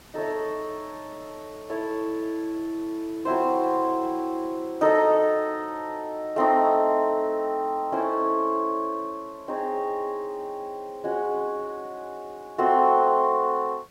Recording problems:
hiss; slope -3 dB per octave, SNR 27 dB

